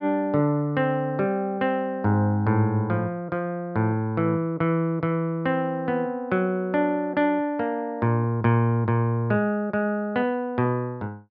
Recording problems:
low-pass filter; nothing above 5.5 kHz

